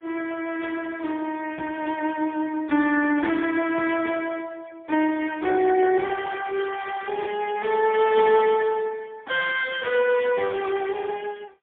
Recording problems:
phone line; 190 Hz to 3.1 kHz, AMR-NB, then MP3

